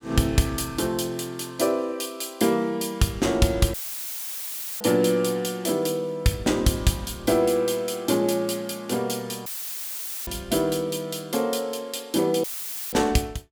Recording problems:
audio cutting out; at 3.5 s for 1 s, at 9.5 s for 1 s and at 12 s; filled with static

